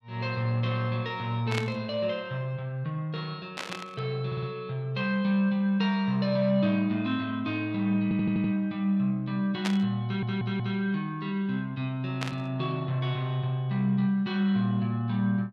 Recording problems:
static burst; 4 times, first at 1.5 s; peak +1 dB vs average level
audio stuttering; at 4.5 s, at 8 s and at 10 s

